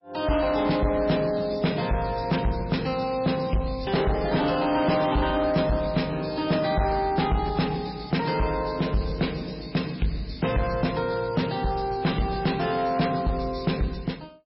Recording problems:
codec artefacts; MP3, log-spectral distance 5 dB, nothing above 5.3 kHz
distorted audio; soft clipping, signal-to-distortion ratio 8 dB

